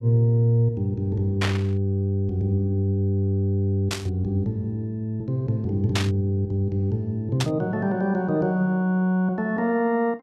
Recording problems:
burst of static; 4 times, first at 1.5 s; peak +2 dB vs average level

